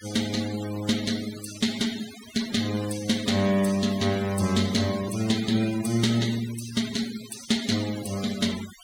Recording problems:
denoising artefacts; signal-to-artefact ratio 12 dB

